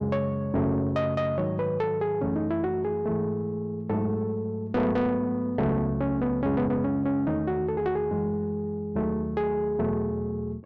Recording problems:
distorted audio; soft clipping, signal-to-distortion ratio 11 dB

